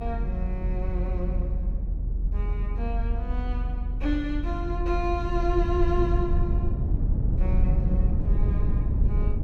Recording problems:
low-frequency rumble; below 76 Hz, strongest tone 42 Hz, SNR -5 dB

